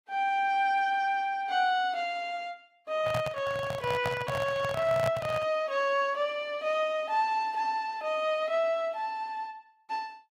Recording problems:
lossy compression; Vorbis, log-spectral distance 2 dB, nothing above 14.3 kHz
handling noise; from 3 to 5.5 s; peak 0 dB vs average level

